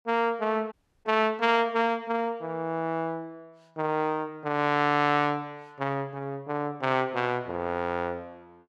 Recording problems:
dropout; at 0.5 s

